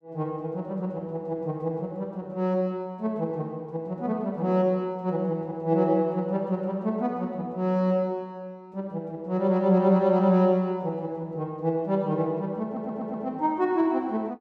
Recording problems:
stutter; at 13 s

